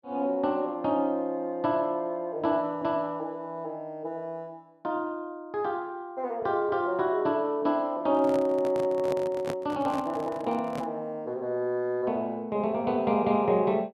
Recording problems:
handling noise; from 8 to 11 s; peak -2 dB vs average level

